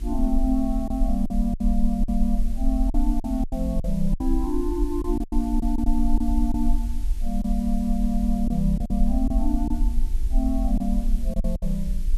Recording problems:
hum; 50 Hz, harmonics up to 400 Hz, SNR 15 dB
background hiss; SNR 23 dB
low-frequency rumble; below 42 Hz, strongest tone 22 Hz, SNR 2 dB
lost packets; 8% of the sound replaced, filled with silence

